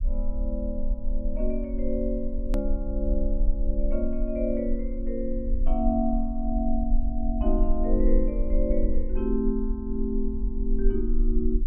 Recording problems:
low-pass filter; nothing above 3.2 kHz
low-frequency rumble; below 38 Hz, strongest tone 20 Hz, SNR 1 dB
edit click; at 2.5 s

